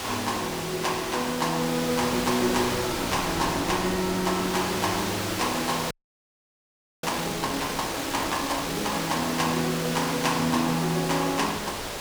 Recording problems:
hiss; slope -3 dB per octave, SNR 4 dB
wind on the microphone; below 2.7 kHz, SNR 13 dB
audio freezing; at 6 s for 1 s

